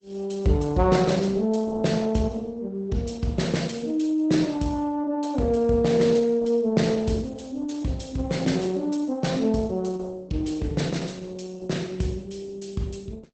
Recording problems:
codec artefacts; Opus, log-spectral distance 3 dB, nothing above 8 kHz

